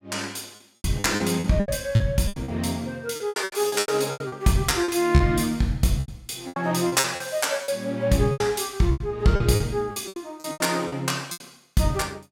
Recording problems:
lost packets; 16% of the sound replaced, filled with repeated pitch periods

